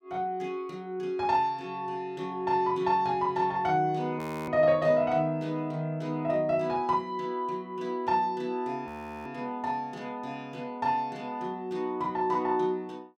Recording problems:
frozen audio; at 4 s and at 9 s

